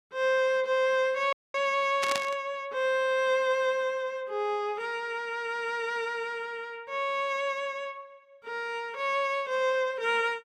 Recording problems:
audio cutting out; at 1.5 s
burst of static; at 2 s; peak +1 dB vs average level

